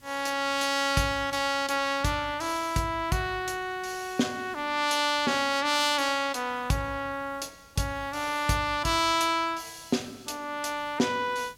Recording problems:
background hiss; SNR 28 dB

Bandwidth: 16.5 kHz